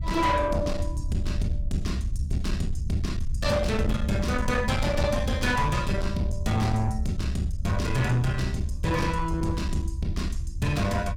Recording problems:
distortion; soft clipping, signal-to-distortion ratio 11 dB
rumble; below 80 Hz, SNR 4 dB

